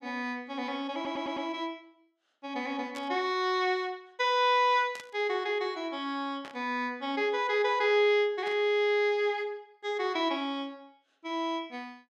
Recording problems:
stutter; at 1 s
static burst; 4 times, first at 3 s; peak -11 dB vs average level

